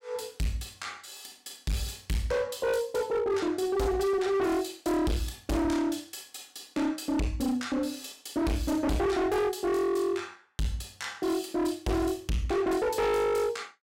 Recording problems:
distorted audio; hard clipping, signal-to-distortion ratio 7 dB

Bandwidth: 16.5 kHz